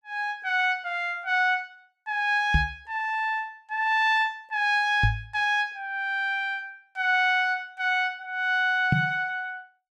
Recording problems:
microphone bump; at 2.5 s, at 5 s and at 9 s; peak +5 dB vs average level

